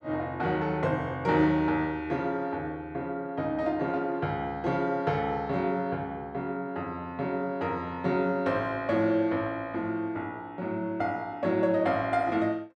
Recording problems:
none

